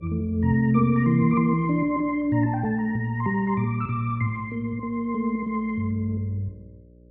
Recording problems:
hum; 60 Hz, harmonics up to 600 Hz, SNR 25 dB

